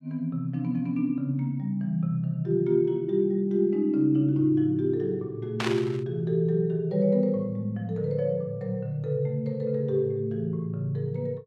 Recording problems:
static burst; at 5.5 s; peak 0 dB vs average level

